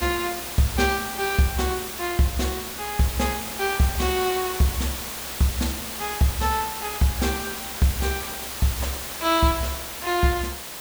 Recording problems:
hiss; slope -1 dB per octave, SNR 6 dB

